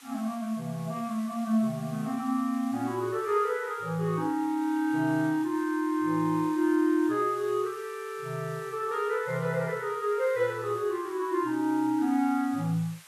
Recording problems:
background hiss; SNR 22 dB

